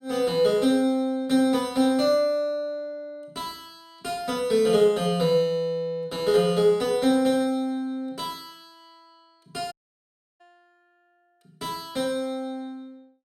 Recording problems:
dropout; at 9.5 s for 0.5 s

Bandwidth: 17 kHz